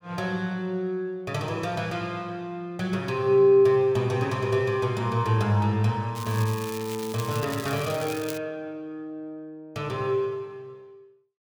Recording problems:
crackling; from 6 to 8.5 s; loose cable, SNR 14 dB

